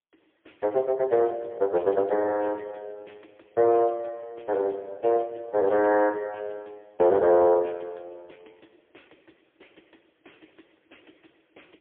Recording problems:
telephone audio; 260 Hz to 3.4 kHz, AMR-NB, then MP3

